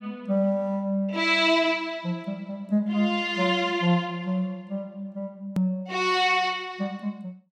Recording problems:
edit click; at 5.5 s

